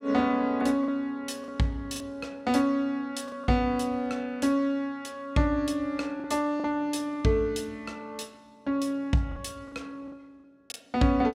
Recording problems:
lost packets; 4% of the sound replaced, filled with the last packet

